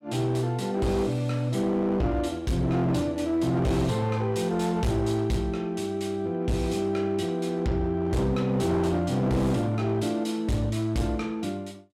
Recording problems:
distorted audio; hard clipping, signal-to-distortion ratio 10 dB

